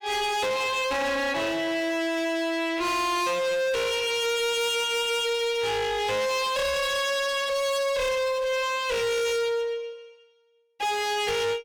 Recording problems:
distortion; hard clipping, uneven, signal-to-distortion ratio 5 dB

